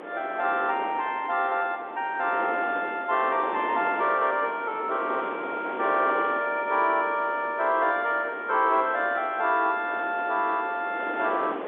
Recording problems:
phone line; 280 Hz to 3.7 kHz, G.711
wind on the microphone; below 990 Hz, SNR 11 dB

